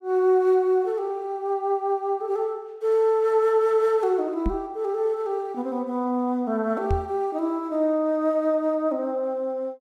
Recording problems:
microphone thump; at 4.5 s and at 7 s; peak +1 dB vs average level

